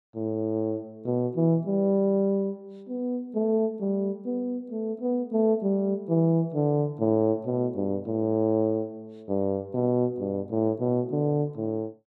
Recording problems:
none

